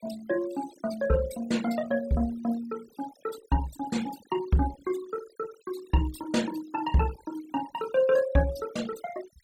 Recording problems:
denoising artefacts; signal-to-artefact ratio 17 dB

